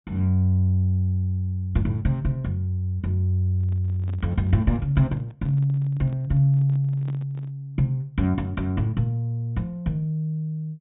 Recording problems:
treble missing; nothing above 4 kHz
handling noise; from 3.5 to 7.5 s; peak -12 dB vs average level

